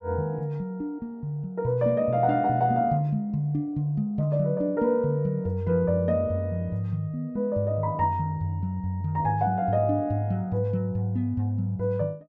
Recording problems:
none

